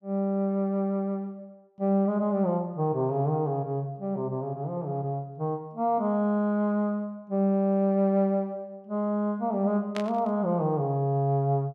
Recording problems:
static burst; at 10 s; peak -5 dB vs average level

